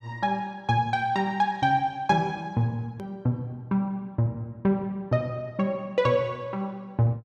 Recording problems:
hard cut with a click; at 3 s

